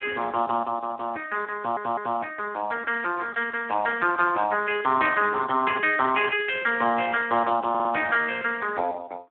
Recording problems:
phone line; 260 Hz to 3.4 kHz, Speex
stutter; at 1.5 s and at 7.5 s

